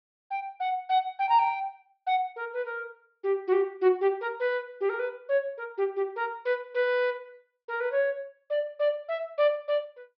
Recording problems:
low-pass filter; nothing above 5.5 kHz

